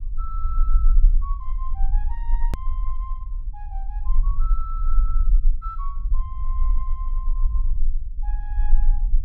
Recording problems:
low-frequency rumble; below 38 Hz, strongest tone 20 Hz, SNR -15 dB
edit click; at 2.5 s

